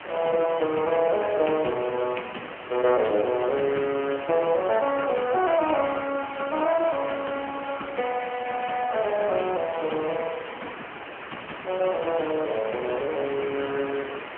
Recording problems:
telephone audio; 240 Hz to 3.1 kHz, AMR-NB
hiss; SNR 12 dB

